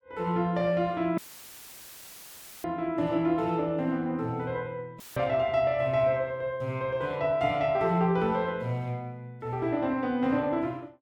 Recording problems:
dropout; at 1 s for 1.5 s and at 5 s; filled with static

